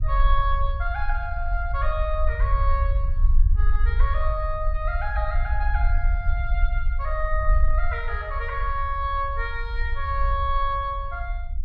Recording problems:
low-frequency rumble; below 54 Hz, SNR -2 dB

